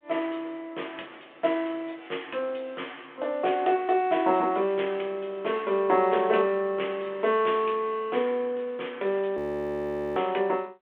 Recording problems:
telephone audio; 300 Hz to 3.4 kHz, G.726
audio freezing; at 9.5 s for 1 s

